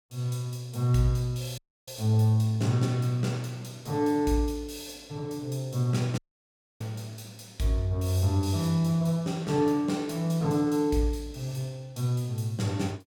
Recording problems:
audio cutting out; at 1.5 s and at 6 s for 0.5 s

